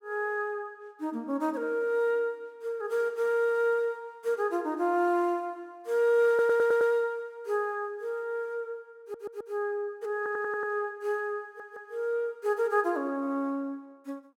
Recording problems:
audio stuttering; 4 times, first at 6.5 s

